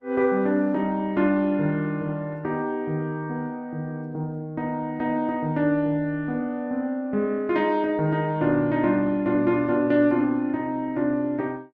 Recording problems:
codec artefacts; Opus, log-spectral distance 2 dB

